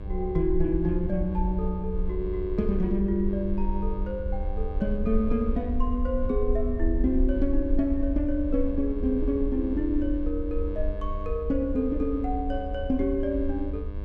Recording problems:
mains hum; 50 Hz, harmonics up to 2.7 kHz, SNR 15 dB
rumble; below 58 Hz, SNR 5 dB

